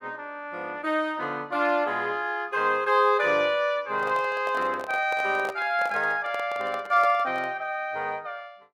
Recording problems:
microphone handling noise; from 4 to 7.5 s; peak -6 dB vs average level

